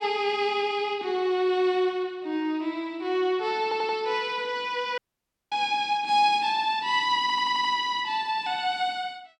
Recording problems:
audio stuttering; at 3.5 s and at 7 s
audio cutting out; at 5 s for 0.5 s

